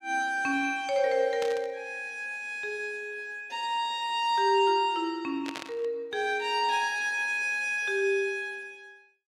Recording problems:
burst of static; at 1.5 s and at 5.5 s; peak -5 dB vs average level

